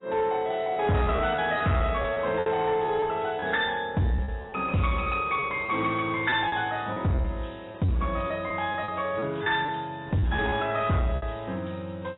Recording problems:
codec artefacts; AAC, log-spectral distance 4 dB, nothing above 3.4 kHz
distorted audio; soft clipping, signal-to-distortion ratio 11 dB
packet loss; 7% of the sound replaced, filled with repeated pitch periods

